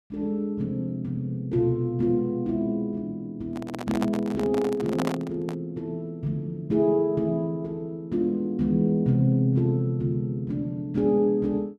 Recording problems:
microphone handling noise; from 3.5 to 5.5 s; peak 0 dB vs average level

